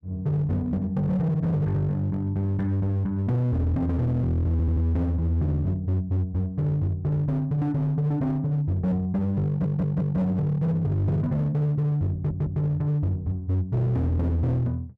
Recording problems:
distortion; hard clipping, uneven, signal-to-distortion ratio 10 dB
audio stuttering; at 4.5 s, at 9.5 s and at 12 s

